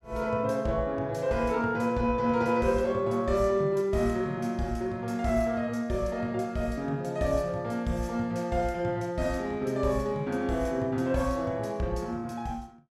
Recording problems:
none

